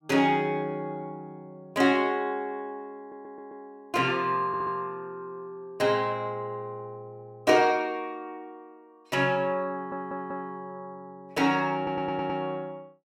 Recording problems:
audio stuttering; 4 times, first at 3 s

